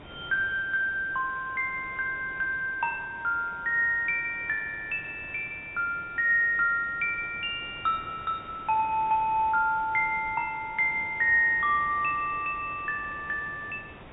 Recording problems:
treble cut off; nothing above 4 kHz
background hiss; SNR 20 dB

